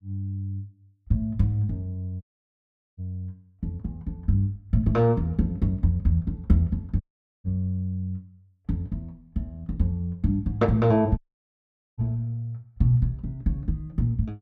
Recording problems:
dropout; at 2 s for 1 s, at 7 s and at 11 s for 1 s

